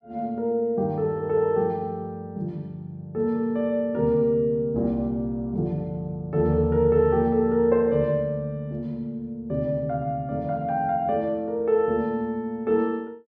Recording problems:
none

